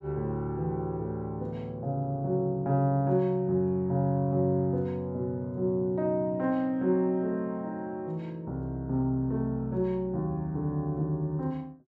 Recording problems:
none

